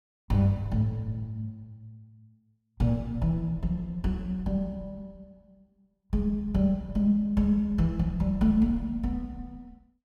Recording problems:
none

